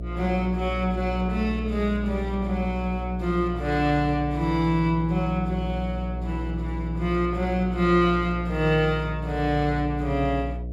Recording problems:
electrical hum; 60 Hz, harmonics up to 660 Hz, SNR 7 dB

